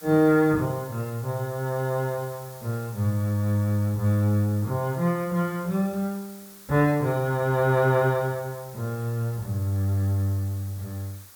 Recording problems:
background hiss; SNR 20 dB

